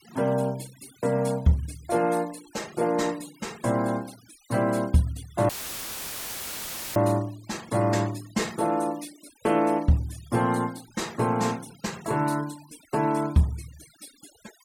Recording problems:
noise reduction artefacts; signal-to-artefact ratio 21 dB
audio cutting out; at 5.5 s for 1.5 s; filled with static

